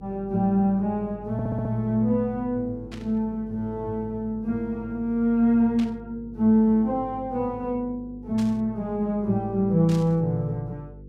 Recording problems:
hum; 50 Hz, harmonics up to 500 Hz, SNR 20 dB
audio stuttering; at 1.5 s
static burst; 4 times, first at 3 s; peak -11 dB vs average level

